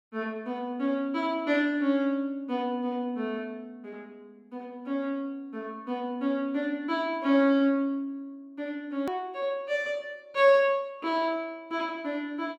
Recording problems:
hard cut with a click; at 9 s

